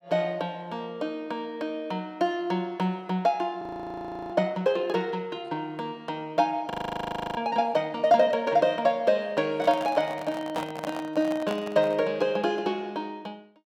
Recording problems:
frozen audio; at 3.5 s for 0.5 s and at 6.5 s for 0.5 s
handling noise; from 9.5 to 12 s; peak -3 dB vs average level

